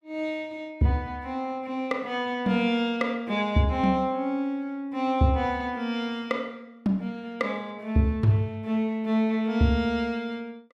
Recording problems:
none

